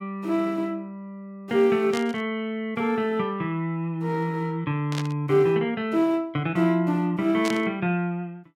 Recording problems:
burst of static; at 2 s, at 5 s and at 7.5 s; peak -4 dB vs average level

